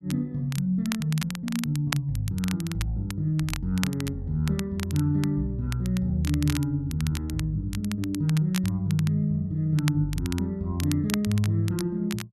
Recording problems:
crackle; vinyl, SNR 12 dB

